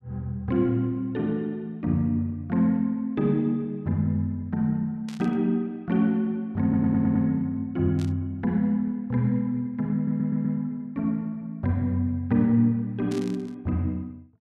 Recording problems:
static burst; at 5 s, at 8 s and at 13 s; peak -12 dB vs average level
audio stuttering; at 6.5 s and at 10 s

